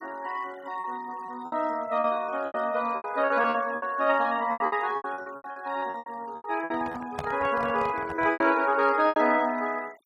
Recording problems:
noise reduction artefacts; signal-to-artefact ratio 22 dB
lost packets; 14% of the sound replaced, filled with repeated pitch periods
handling noise; from 6.5 to 8.5 s; peak -2 dB vs average level

